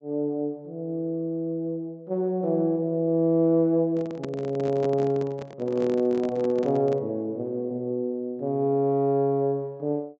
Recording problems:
treble missing; nothing above 8 kHz
handling noise; from 4 to 7 s; peak -5 dB vs average level

